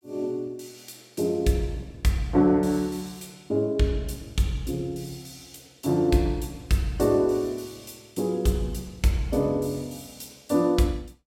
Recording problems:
none

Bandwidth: 16.5 kHz